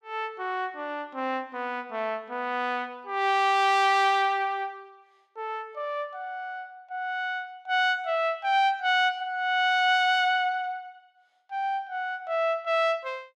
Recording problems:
none

